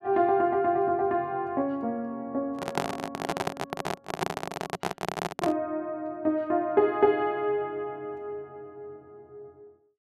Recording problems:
microphone handling noise; from 2.5 to 5.5 s; peak +4 dB vs average level

